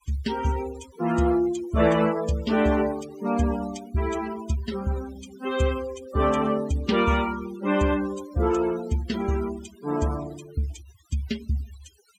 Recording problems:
noise reduction artefacts; signal-to-artefact ratio 16 dB

